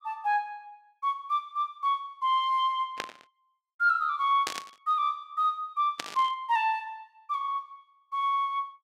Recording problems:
static burst; at 3 s, at 4.5 s and at 6 s; peak +1 dB vs average level

